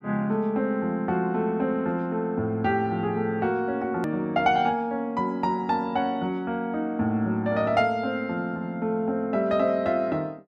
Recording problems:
edit click; at 4 s

